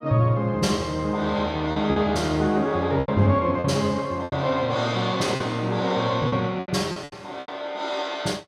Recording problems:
lost packets; 8% of the sound replaced, filled with repeated pitch periods

